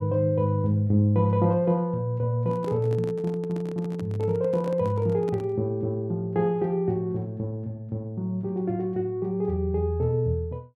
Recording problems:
handling noise; from 2.5 to 5.5 s; peak -7 dB vs average level

